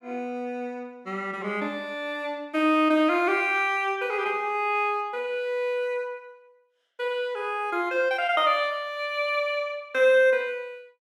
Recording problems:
none

